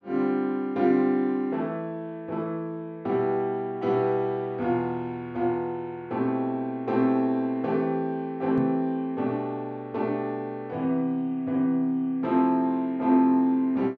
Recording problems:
knock on the microphone; at 8.5 s; peak -2 dB vs average level

